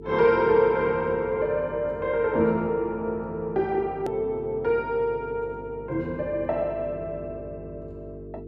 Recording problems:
electrical hum; 50 Hz, harmonics up to 450 Hz, SNR 16 dB
click at an edit; at 4 s

